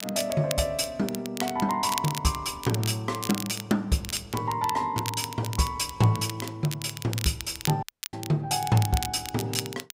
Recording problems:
crackling; vinyl, SNR 9 dB
audio cutting out; at 8 s

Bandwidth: 15.5 kHz